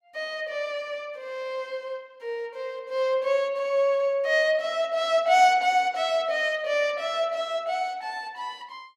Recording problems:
none

